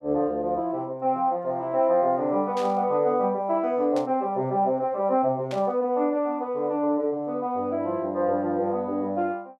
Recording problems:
burst of static; at 2.5 s, at 4 s and at 5.5 s; peak -10 dB vs average level

